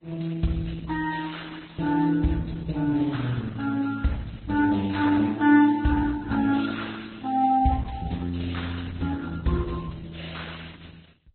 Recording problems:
lossy compression; Opus, then Vorbis, log-spectral distance 6 dB, nothing above 4.1 kHz

